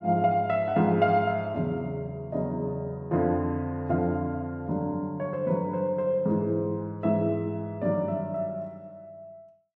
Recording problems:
none

